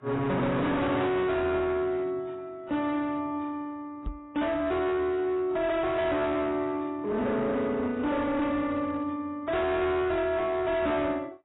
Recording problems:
codec artefacts; AAC, log-spectral distance 2 dB, nothing above 3.8 kHz
distortion; hard clipping, signal-to-distortion ratio 7 dB
microphone bump; at 4 s; peak -4 dB vs average level

